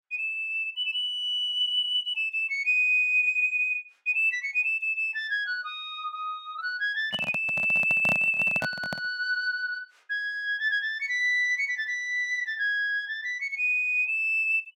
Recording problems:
microphone handling noise; from 7 to 9 s; peak -4 dB vs average level

